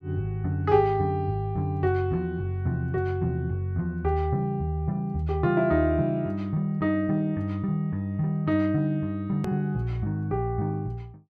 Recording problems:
edit click; at 9.5 s

